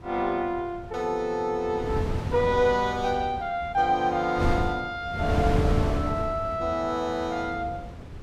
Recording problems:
wind noise; below 230 Hz, SNR 5 dB

